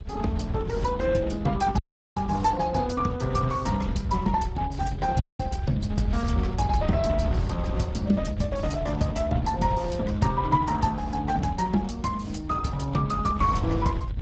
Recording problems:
lossy compression; Speex, log-spectral distance 2 dB, nothing above 7.8 kHz
low-frequency rumble; below 110 Hz, SNR 6 dB
dropout; at 2 s and at 5 s

